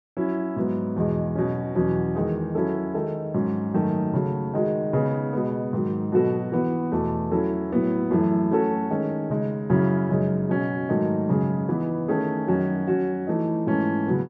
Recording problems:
none

